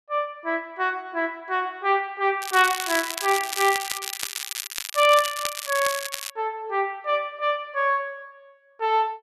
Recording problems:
crackling; from 2.5 to 6.5 s; loose cable, SNR 6 dB

